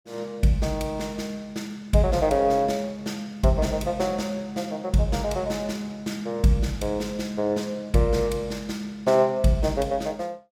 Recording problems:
none

